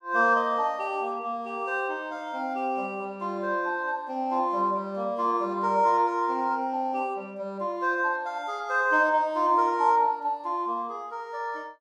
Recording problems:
none

